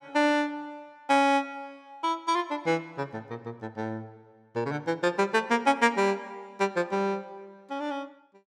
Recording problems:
none

